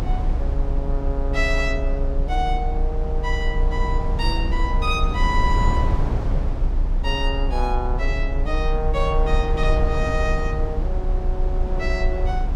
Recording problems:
rumble; below 60 Hz, strongest tone 32 Hz, SNR -2 dB

